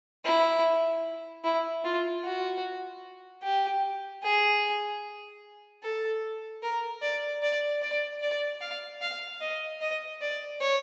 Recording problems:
treble missing; nothing above 8 kHz

